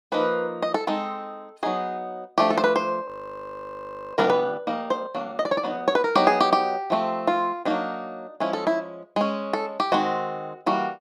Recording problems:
audio freezing; at 3 s for 1 s

